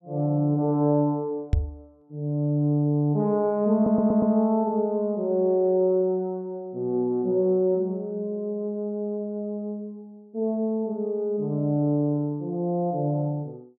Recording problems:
knock on the microphone; at 1.5 s; peak +6 dB vs average level
stutter; at 3.5 s

